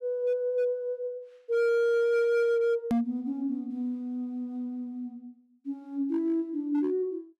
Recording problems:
distortion; hard clipping, signal-to-distortion ratio 12 dB
edit click; at 3 s

